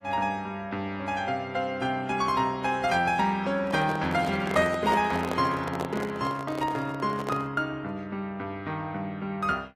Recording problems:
lossy codec; AAC, log-spectral distance 2 dB, nothing above 13.5 kHz
handling noise; from 3.5 to 7.5 s; peak +1 dB vs average level

